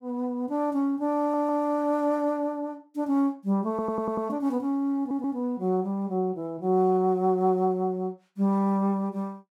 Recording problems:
audio stuttering; at 1 s, at 3.5 s and at 5 s

